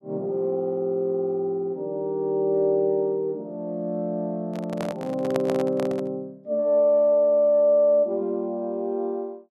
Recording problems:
handling noise; from 4.5 to 6 s; peak -2 dB vs average level

